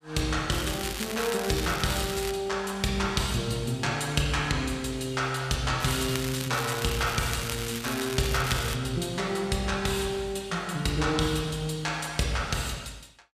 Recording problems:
crackling; from 0.5 to 2.5 s and from 6 to 9 s; loose cable, SNR 7 dB

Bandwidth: 14.5 kHz